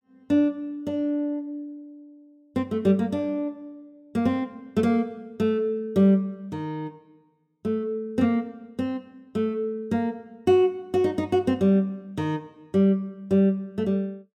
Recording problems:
none

